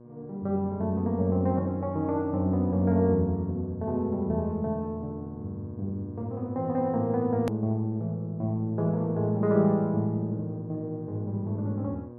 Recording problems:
hum; 60 Hz, harmonics up to 1.2 kHz, SNR 19 dB
hard cut with a click; at 7.5 s

